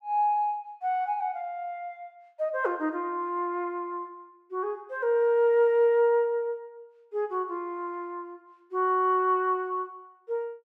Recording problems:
none

